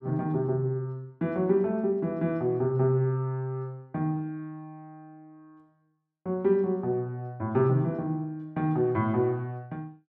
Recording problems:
none

